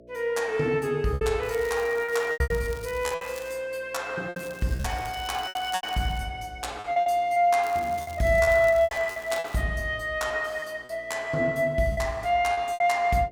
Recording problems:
mains hum; 60 Hz, harmonics up to 660 Hz, SNR 26 dB
lost packets; 10% of the sound replaced, filled with repeated pitch periods
crackle; from 1.5 to 3.5 s, from 4.5 to 6 s and from 7.5 to 9.5 s; loose cable, SNR 21 dB

